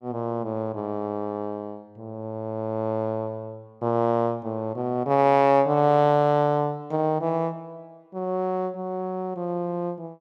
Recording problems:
none

